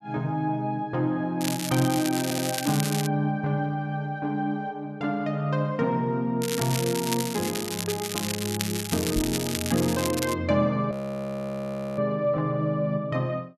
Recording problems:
crackling; from 1.5 to 3 s and from 6.5 to 10 s; loose cable, SNR 5 dB
audio stuttering; at 2 s
microphone bump; at 9 s; peak -1 dB vs average level
frozen audio; at 11 s for 1 s

